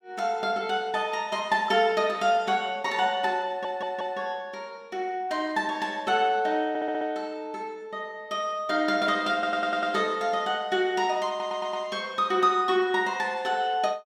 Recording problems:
audio stuttering; 4 times, first at 3.5 s

